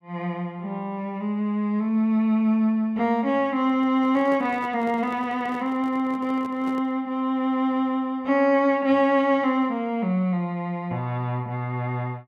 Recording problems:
microphone handling noise; from 3.5 to 7 s; peak -12 dB vs average level

